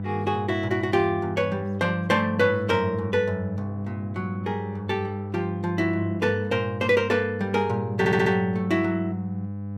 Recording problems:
mains hum; 50 Hz, harmonics up to 800 Hz, SNR 8 dB
audio stuttering; at 8 s

